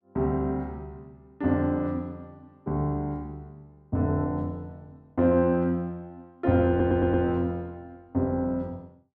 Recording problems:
audio stuttering; at 6.5 s

